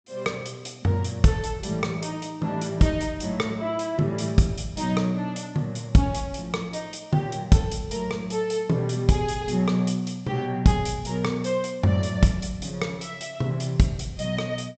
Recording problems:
treble missing; nothing above 8 kHz

